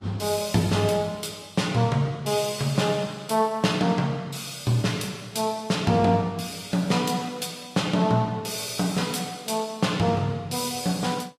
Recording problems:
codec artefacts; Vorbis, log-spectral distance 4 dB, nothing above 14.7 kHz

